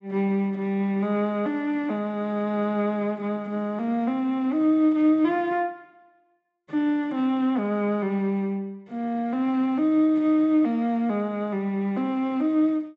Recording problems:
low-pass filter; nothing above 7.8 kHz

